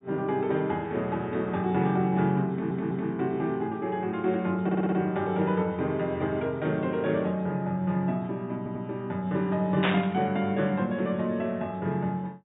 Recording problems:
treble cut off; nothing above 4 kHz
audio stuttering; at 2.5 s, at 4.5 s and at 8.5 s
burst of static; at 10 s; peak +4 dB vs average level

